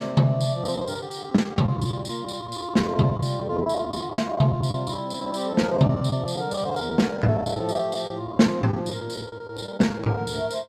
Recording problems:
lost packets; 15% of the sound replaced, filled with the last packet

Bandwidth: 14.5 kHz